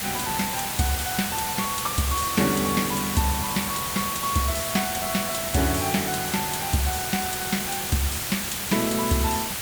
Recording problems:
hiss; slope 0 dB per octave, SNR 1 dB

